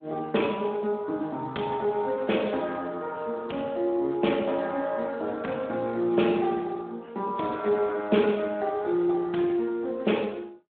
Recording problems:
telephone audio; 240 Hz to 3.6 kHz, Speex

